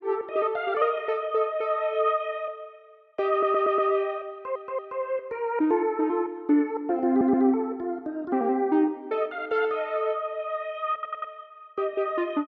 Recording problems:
stutter; 4 times, first at 3.5 s

